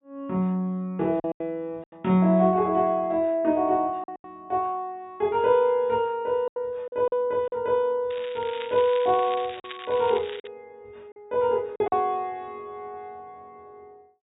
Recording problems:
treble cut off; nothing above 4 kHz
lost packets; 5% of the sound replaced, filled with silence
crackling; from 8 to 10 s; loose cable, SNR 16 dB

